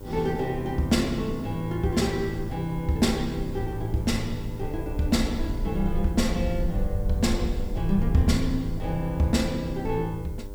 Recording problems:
hum; 50 Hz, harmonics up to 1.5 kHz, SNR 16 dB
background hiss; SNR 27 dB
low-frequency rumble; below 66 Hz, SNR 8 dB

